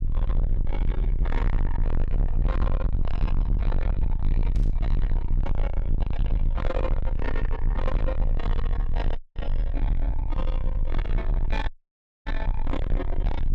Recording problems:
distortion; soft clipping, signal-to-distortion ratio 6 dB
low-frequency rumble; below 52 Hz, strongest tone 22 Hz, SNR -6 dB
burst of static; at 4.5 s; peak -11 dB vs average level
dropout; at 9 s and at 12 s for 0.5 s

